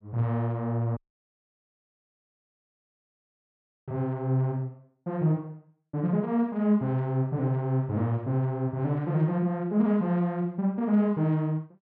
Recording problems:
audio cutting out; at 1 s for 3 s

